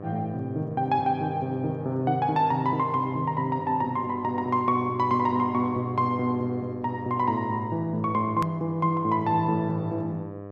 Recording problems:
hum; 50 Hz, harmonics up to 1.3 kHz, SNR 14 dB
click at an edit; at 8.5 s

